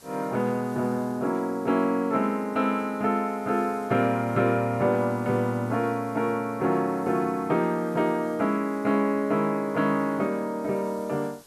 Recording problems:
hiss; SNR 27 dB

